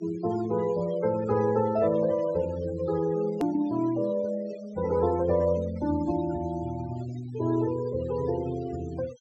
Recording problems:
low-pass filter; nothing above 7.9 kHz
denoising artefacts; signal-to-artefact ratio 18 dB
click at an edit; at 3.5 s

